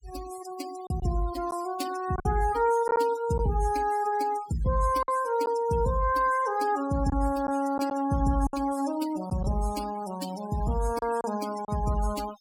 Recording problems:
noise reduction artefacts; signal-to-artefact ratio 15 dB
lost packets; 4% of the sound replaced, filled with silence

